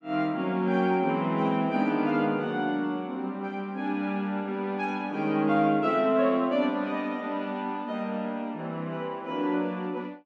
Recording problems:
none

